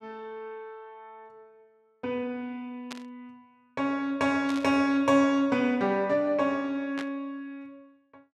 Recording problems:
static burst; at 3 s, at 4.5 s and at 7 s; peak -8 dB vs average level

